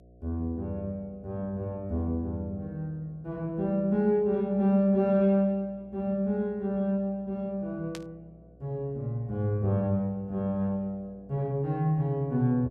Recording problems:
hum; 60 Hz, harmonics up to 720 Hz, SNR 26 dB
burst of static; at 8 s; peak -8 dB vs average level

